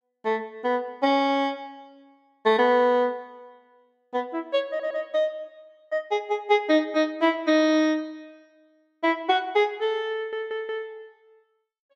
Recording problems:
stutter; at 4.5 s and at 10 s

